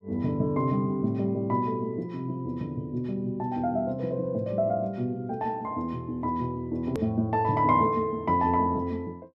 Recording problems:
hard cut with a click; at 7 s

